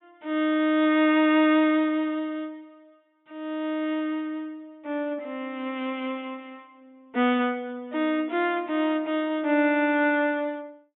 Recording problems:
low-pass filter; nothing above 3.9 kHz

